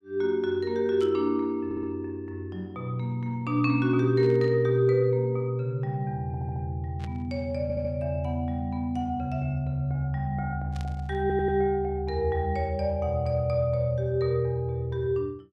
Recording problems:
burst of static; 4 times, first at 1 s; peak -14 dB vs average level
audio stuttering; 4 times, first at 1.5 s

